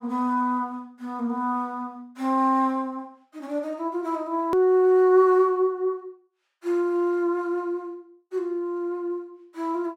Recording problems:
hard cut with a click; at 4.5 s

